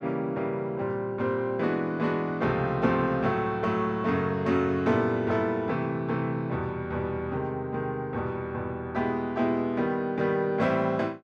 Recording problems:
none

